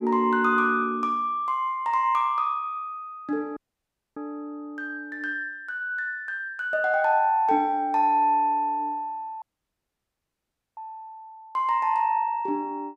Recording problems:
audio cutting out; at 3.5 s for 0.5 s and at 9.5 s for 1.5 s

